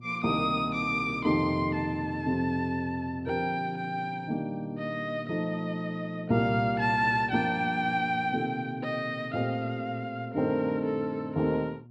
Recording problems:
mains hum; 60 Hz, harmonics up to 360 Hz, SNR 19 dB

